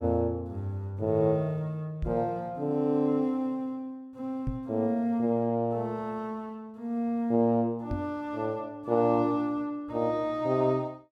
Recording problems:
knock on the microphone; at 2 s, at 4.5 s and at 8 s; peak 0 dB vs average level

